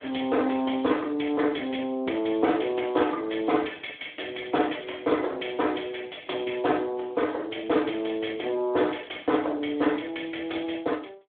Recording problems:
telephone audio; 240 Hz to 3.5 kHz, Speex

